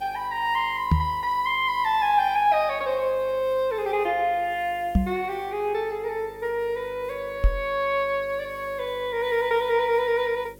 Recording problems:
hum; 50 Hz, harmonics up to 550 Hz, SNR 24 dB
background hiss; SNR 29 dB
knock on the microphone; at 1 s, at 5 s and at 7.5 s; peak +8 dB vs average level

